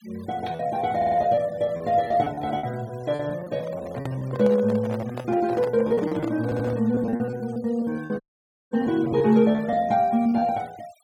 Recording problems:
denoising artefacts; signal-to-artefact ratio 24 dB
packet loss; 14% of the sound replaced, filled with repeated pitch periods
stutter; at 1 s and at 6.5 s
microphone handling noise; from 3.5 to 7 s; peak -5 dB vs average level
audio cutting out; at 8 s for 0.5 s

